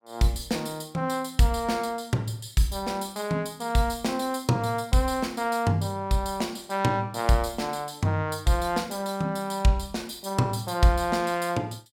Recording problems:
none

